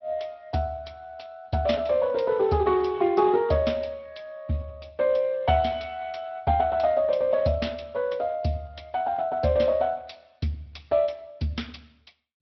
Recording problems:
treble cut off; nothing above 5.5 kHz
lossy codec; Speex, log-spectral distance 3 dB

